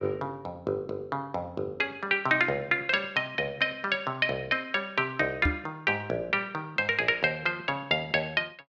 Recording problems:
microphone thump; at 5.5 s; peak +4 dB vs average level

